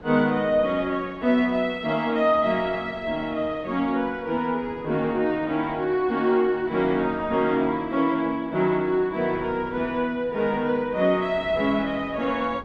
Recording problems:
wind noise; below 630 Hz, SNR 21 dB

